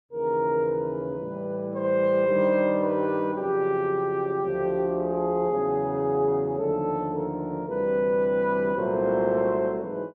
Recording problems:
none

